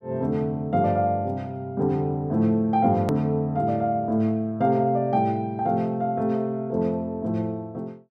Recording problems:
click at an edit; at 3 s

